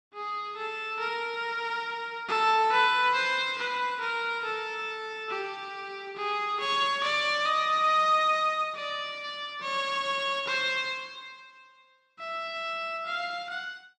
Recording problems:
none

